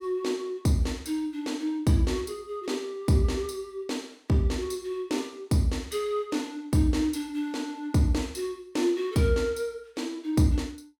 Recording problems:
none

